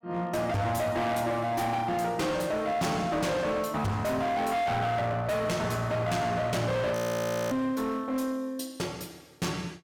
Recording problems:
distortion; hard clipping, uneven, signal-to-distortion ratio 7 dB
audio freezing; at 7 s for 0.5 s

